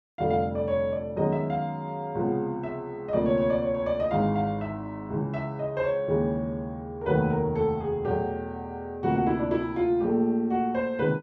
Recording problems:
none

